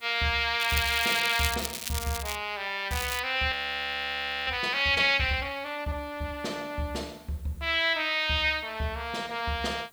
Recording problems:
hiss; slope -3 dB per octave, SNR 30 dB
crackle; from 0.5 to 2.5 s and at 3 s; loose cable, SNR 7 dB
audio freezing; at 3.5 s for 1 s

